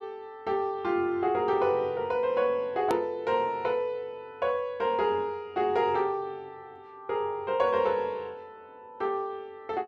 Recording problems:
edit click; at 3 s

